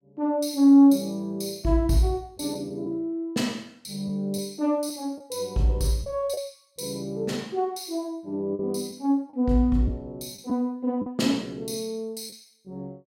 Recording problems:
packet loss; 3% of the sound replaced, filled with the last packet

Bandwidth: 16 kHz